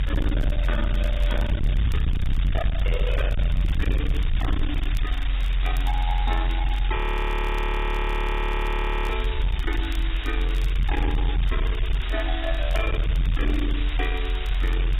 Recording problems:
codec artefacts; AAC, log-spectral distance 10 dB, nothing above 15.6 kHz
distorted audio; hard clipping, signal-to-distortion ratio 6 dB
hiss; SNR 5 dB
rumble; below 56 Hz, strongest tone 44 Hz, SNR -5 dB
crackle; vinyl, SNR 22 dB
audio freezing; at 7 s for 2 s

